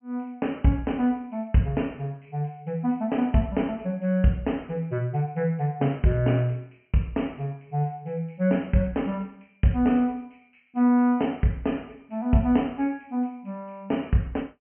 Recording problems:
treble cut off; nothing above 3 kHz

